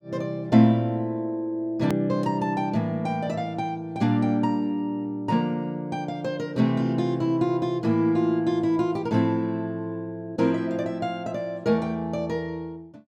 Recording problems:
edit click; at 2 s

